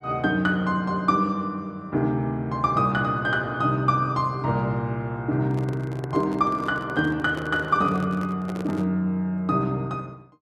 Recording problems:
microphone handling noise; from 5.5 to 9 s; peak -5 dB vs average level

